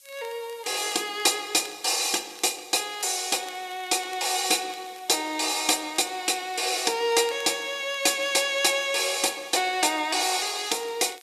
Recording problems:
background hiss; SNR 27 dB
crackle; vinyl, SNR 26 dB

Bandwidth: 14 kHz